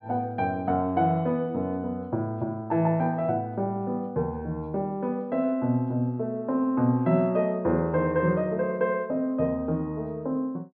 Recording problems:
treble cut off; nothing above 5.5 kHz

